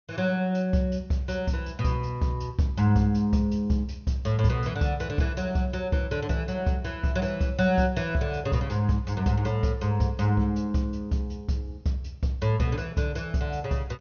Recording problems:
low-pass filter; nothing above 6.5 kHz

